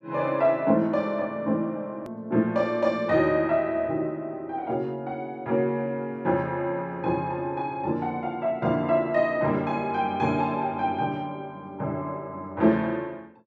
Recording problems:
edit click; at 2 s

